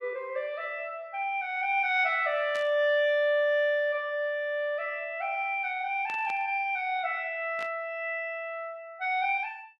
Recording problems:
burst of static; at 2.5 s, at 6 s and at 7.5 s; peak -10 dB vs average level

